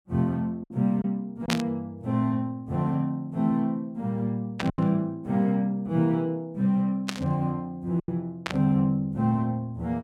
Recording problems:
lost packets; 3% of the sound replaced, filled with silence
static burst; 4 times, first at 1.5 s; peak +3 dB vs average level

